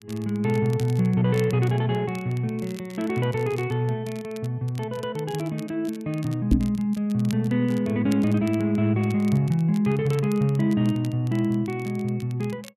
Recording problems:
crackle; vinyl, SNR 23 dB
knock on the microphone; at 6.5 s; peak +7 dB vs average level

